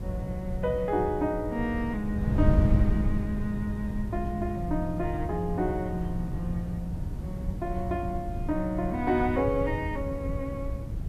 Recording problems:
hiss; SNR 30 dB
wind on the microphone; below 130 Hz, SNR 2 dB

